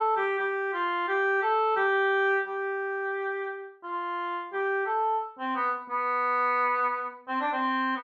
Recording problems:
none

